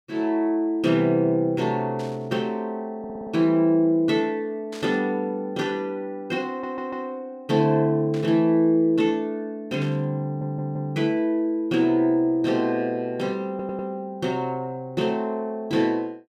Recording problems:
static burst; 4 times, first at 2 s; peak -13 dB vs average level
stutter; 4 times, first at 3 s

